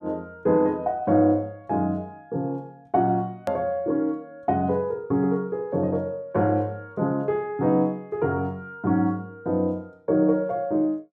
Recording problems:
click at an edit; at 3.5 s

